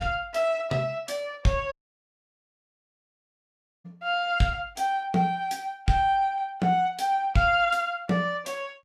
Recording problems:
audio cutting out; at 1.5 s for 2 s

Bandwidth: 14.5 kHz